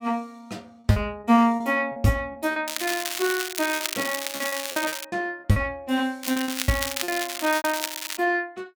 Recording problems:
packet loss; 10% of the sound replaced, filled with repeated pitch periods
crackling; from 2.5 to 5 s and from 6 to 8 s; loose cable, SNR 5 dB

